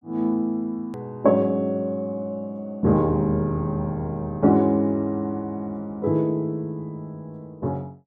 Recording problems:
click at an edit; at 1 s

